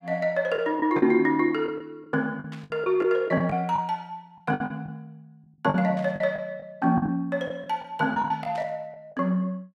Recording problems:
packet loss; 10% of the sound replaced, filled with the last packet
static burst; at 2.5 s, at 6 s and at 8.5 s; peak -15 dB vs average level

